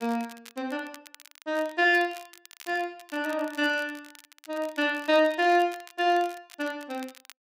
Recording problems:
crackle; vinyl, SNR 22 dB

